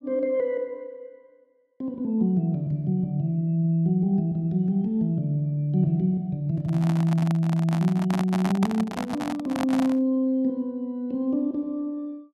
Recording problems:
microphone handling noise; from 6.5 to 10 s; peak -1 dB vs average level

